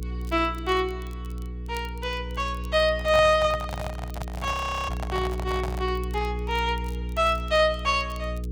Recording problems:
hum; 60 Hz, harmonics up to 480 Hz, SNR 8 dB
crackle; vinyl, SNR 27 dB
microphone handling noise; from 3 to 6 s; peak -3 dB vs average level
frozen audio; at 4.5 s

